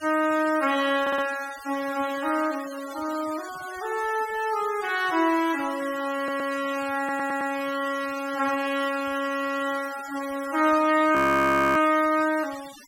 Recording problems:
noise reduction artefacts; signal-to-artefact ratio 16 dB
stutter; at 1 s, at 6 s and at 7 s
frozen audio; at 11 s for 0.5 s

